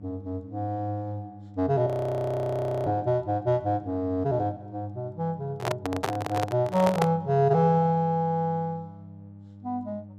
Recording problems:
hum; 50 Hz, harmonics up to 600 Hz, SNR 19 dB
frozen audio; at 2 s for 1 s
microphone handling noise; from 5.5 to 7 s; peak +4 dB vs average level

